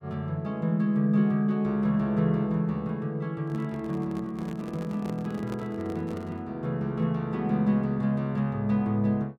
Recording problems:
microphone handling noise; from 3.5 to 6.5 s; peak -7 dB vs average level

